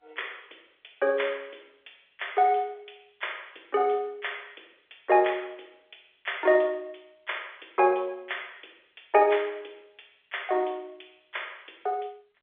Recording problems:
phone line; 320 Hz to 3.5 kHz, G.711

